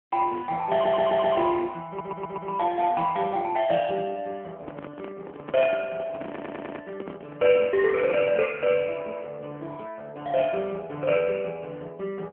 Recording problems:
phone line; 240 Hz to 3.1 kHz, AMR-NB
audio stuttering; at 0.5 s, at 2 s and at 6.5 s
microphone handling noise; from 4.5 to 8.5 s; peak -6 dB vs average level

